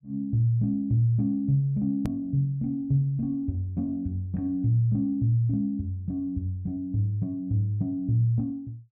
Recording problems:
click at an edit; at 2 s

